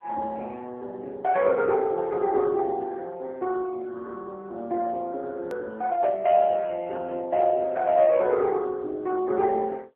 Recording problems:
telephone audio; 280 Hz to 2.8 kHz, AMR-NB
edit click; at 5.5 s

